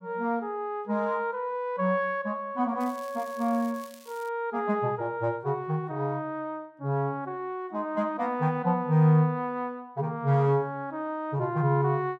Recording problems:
crackling; from 3 to 4.5 s; loose cable, SNR 23 dB

